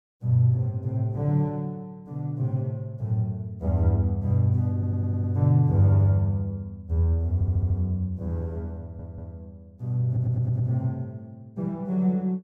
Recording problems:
stutter; 4 times, first at 4.5 s

